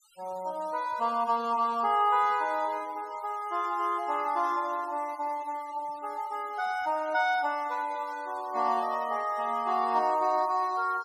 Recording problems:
noise reduction artefacts; signal-to-artefact ratio 23 dB

